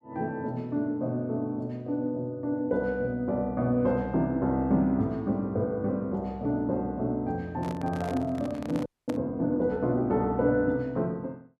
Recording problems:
handling noise; from 7.5 to 9 s; peak -5 dB vs average level
frozen audio; at 9 s

